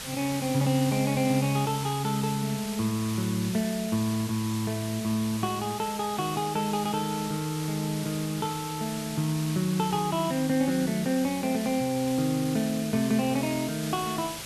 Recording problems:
background hiss; slope 0 dB per octave, SNR 9 dB

